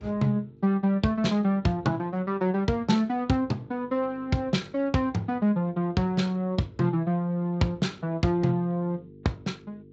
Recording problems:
lossy codec; Speex, log-spectral distance 2 dB, nothing above 7.3 kHz
hum; 50 Hz, harmonics up to 450 Hz, SNR 24 dB

